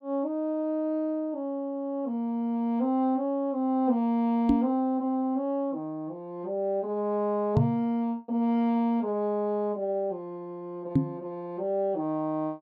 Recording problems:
microphone bump; at 4.5 s, at 7.5 s and at 11 s; peak +9 dB vs average level

